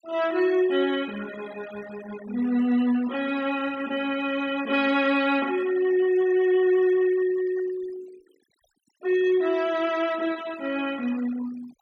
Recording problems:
denoising artefacts; signal-to-artefact ratio 19 dB

